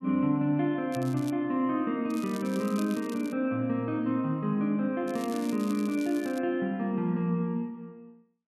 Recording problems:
crackle; at 1 s, from 2 to 3.5 s and from 5 to 6.5 s; loose cable, SNR 19 dB

